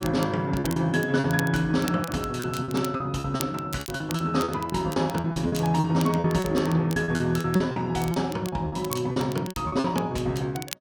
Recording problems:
crackling; vinyl, SNR 16 dB
packet loss; 13% of the sound replaced, filled with repeated pitch periods

